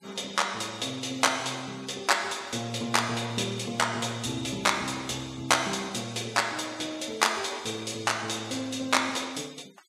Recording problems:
noise reduction artefacts; signal-to-artefact ratio 22 dB

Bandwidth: 14 kHz